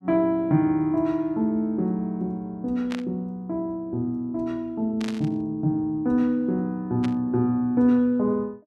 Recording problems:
static burst; at 3 s, at 5 s and at 7 s; peak -8 dB vs average level

